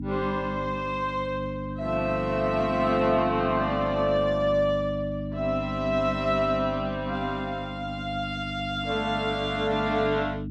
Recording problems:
mains hum; 50 Hz, harmonics up to 300 Hz, SNR 8 dB

